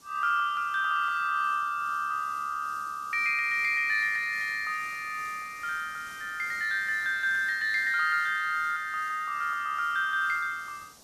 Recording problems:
hiss; SNR 23 dB

